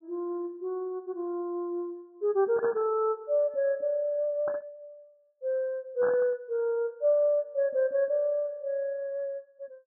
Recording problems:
static burst; at 2.5 s, at 4.5 s and at 6 s; peak -4 dB vs average level

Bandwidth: 1.5 kHz